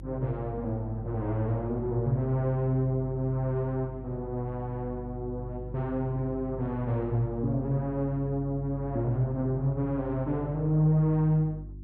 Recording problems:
hum; 50 Hz, harmonics up to 350 Hz, SNR 13 dB

